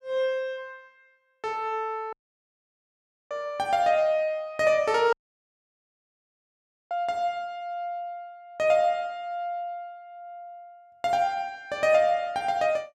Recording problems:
dropout; at 2 s for 1 s and at 5 s for 2 s

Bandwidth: 13 kHz